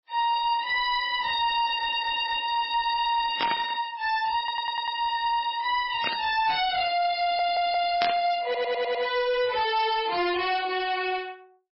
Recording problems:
lossy compression; MP3, log-spectral distance 4 dB, nothing above 4.9 kHz
distortion; hard clipping, uneven, signal-to-distortion ratio 10 dB
stutter; 4 times, first at 1.5 s
burst of static; at 3.5 s, at 6 s and at 8 s; peak +2 dB vs average level

